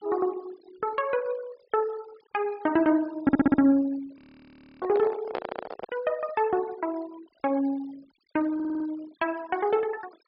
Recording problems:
treble missing; nothing above 5.5 kHz
denoising artefacts; signal-to-artefact ratio 23 dB
stutter; at 3 s, at 5.5 s and at 8.5 s
frozen audio; at 4 s for 0.5 s
microphone handling noise; from 5 to 6 s; peak 0 dB vs average level

